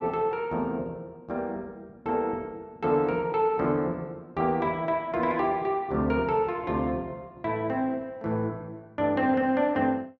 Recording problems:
none

